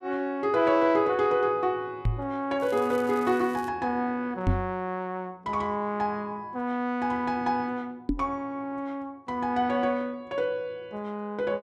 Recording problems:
knock on the microphone; at 2 s, at 4.5 s and at 8 s; peak +6 dB vs average level
crackle; from 2.5 to 3.5 s; loose cable, SNR 23 dB

